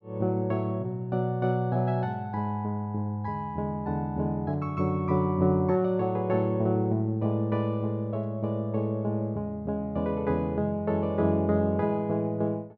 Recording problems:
none

